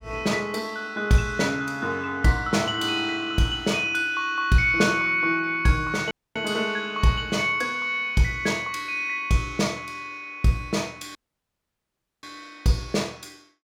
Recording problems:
audio cutting out; at 6 s and at 11 s for 1 s

